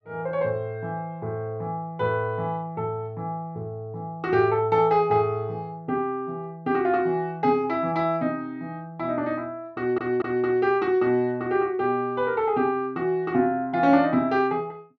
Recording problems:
audio stuttering; at 10 s

